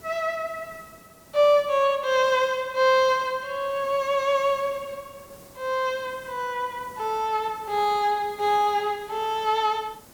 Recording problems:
background hiss; SNR 24 dB

